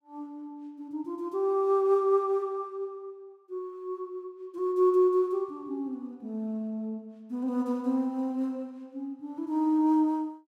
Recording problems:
none

